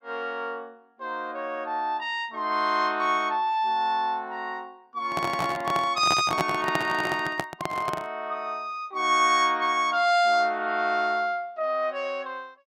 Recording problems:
microphone handling noise; from 5 to 8 s; peak +3 dB vs average level

